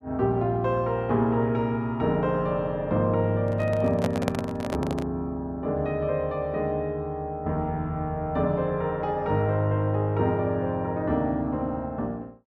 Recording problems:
microphone handling noise; from 3.5 to 5 s; peak +3 dB vs average level

